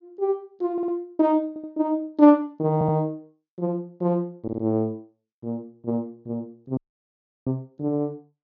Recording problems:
treble cut off; nothing above 6.8 kHz
audio stuttering; 4 times, first at 0.5 s
audio cutting out; at 7 s for 0.5 s

